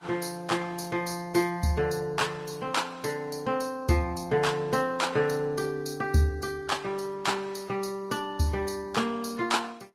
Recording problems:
lossy codec; Vorbis, then Opus, log-spectral distance 4 dB, nothing above 15.5 kHz

